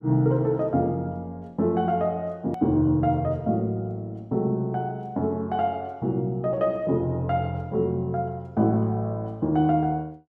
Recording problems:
click at an edit; at 2.5 s

